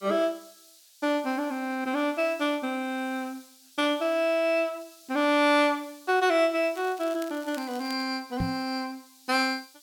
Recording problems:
background hiss; SNR 25 dB
crackle; from 6.5 to 8 s; loose cable, SNR 22 dB
microphone thump; at 8.5 s; peak +1 dB vs average level

